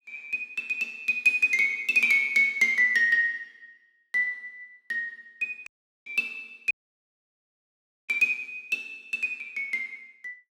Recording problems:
audio cutting out; at 5.5 s and at 6.5 s for 1.5 s

